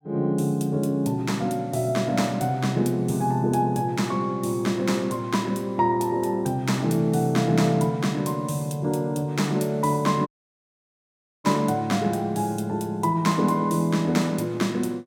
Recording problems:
audio cutting out; at 10 s for 1 s

